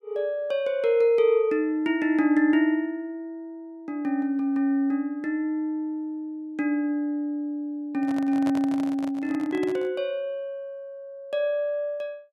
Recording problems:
handling noise; from 8 to 10 s; peak -5 dB vs average level

